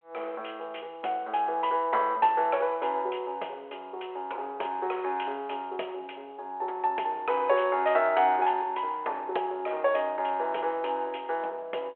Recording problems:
phone line; 340 Hz to 3.6 kHz, G.726

